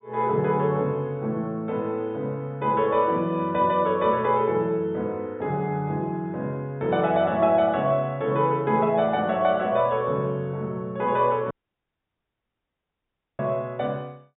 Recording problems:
treble missing; nothing above 4 kHz
audio cutting out; at 12 s for 2 s

